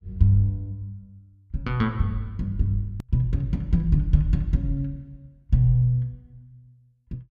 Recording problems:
click at an edit; at 3 s

